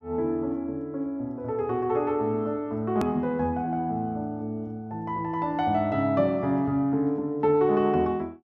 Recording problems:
hard cut with a click; at 3 s

